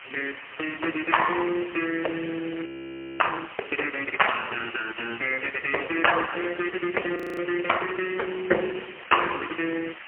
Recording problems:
telephone audio; 280 Hz to 3.1 kHz, AMR-NB, then MP3
hiss; SNR 14 dB
frozen audio; at 2.5 s for 0.5 s and at 7 s

